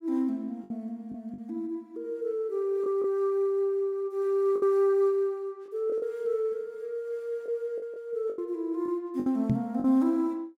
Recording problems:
lost packets; 6% of the sound replaced, filled with the last packet
microphone bump; at 9.5 s; peak +6 dB vs average level

